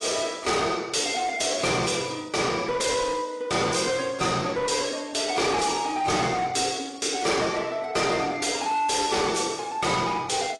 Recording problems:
codec artefacts; AAC, log-spectral distance 5 dB, nothing above 10.1 kHz
distorted audio; hard clipping, signal-to-distortion ratio 6 dB

